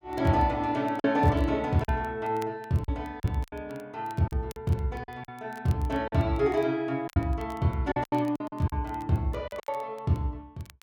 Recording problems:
crackling; vinyl, SNR 27 dB
lost packets; 8% of the sound replaced, filled with silence

